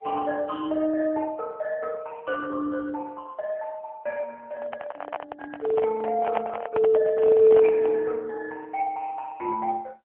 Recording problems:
telephone audio; 320 Hz to 2.9 kHz, AMR-NB
microphone handling noise; from 4.5 to 8 s; peak +2 dB vs average level

